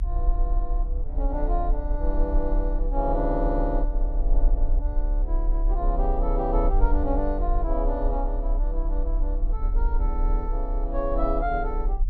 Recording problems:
rumble; below 38 Hz, strongest tone 34 Hz, SNR -3 dB

